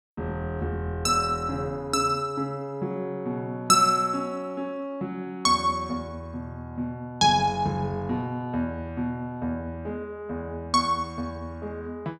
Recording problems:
none

